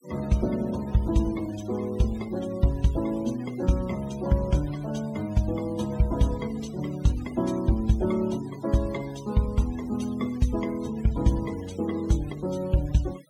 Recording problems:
denoising artefacts; signal-to-artefact ratio 21 dB

